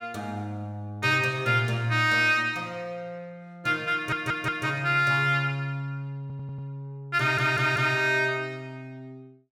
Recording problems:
audio stuttering; at 4 s, at 6 s and at 7 s

